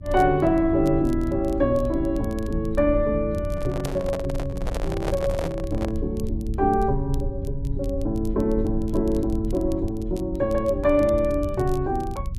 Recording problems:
rumble; below 88 Hz, SNR 8 dB
crackling; vinyl, SNR 26 dB
microphone handling noise; from 3.5 to 6 s; peak -1 dB vs average level

